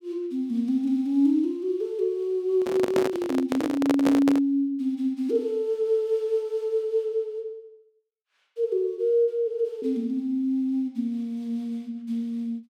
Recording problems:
handling noise; from 2.5 to 4.5 s; peak +3 dB vs average level

